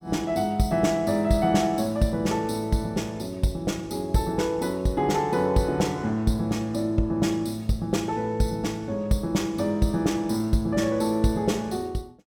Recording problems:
none

